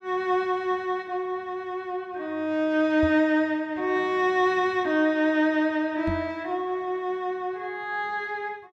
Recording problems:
knock on the microphone; at 3 s and at 6 s; peak -2 dB vs average level

